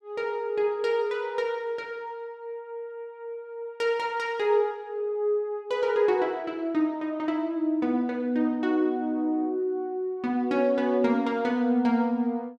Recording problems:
none

